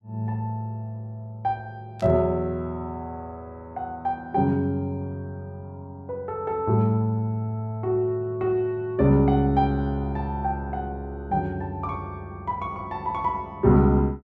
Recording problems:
burst of static; at 2 s; peak -14 dB vs average level

